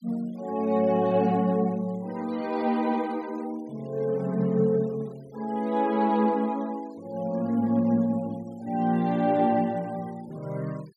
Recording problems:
denoising artefacts; signal-to-artefact ratio 26 dB

